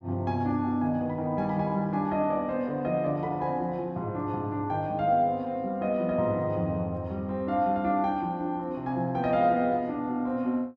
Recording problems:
none

